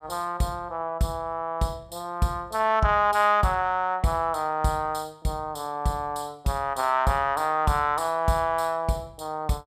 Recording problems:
none

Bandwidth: 14.5 kHz